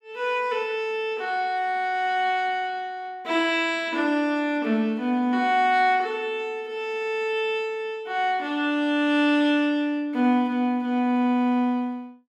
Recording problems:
none

